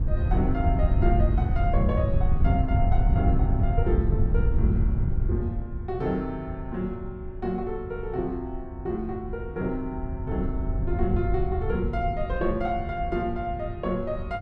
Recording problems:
wind noise; below 100 Hz, SNR -3 dB

